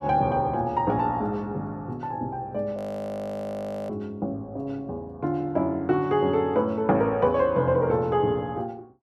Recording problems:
audio freezing; at 3 s for 1 s

